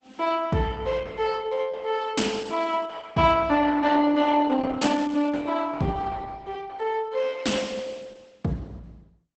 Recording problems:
lossy compression; Opus, log-spectral distance 4 dB, nothing above 8 kHz

